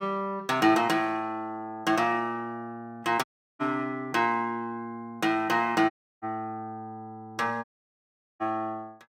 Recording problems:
audio cutting out; at 3 s, at 6 s and at 7.5 s for 1 s

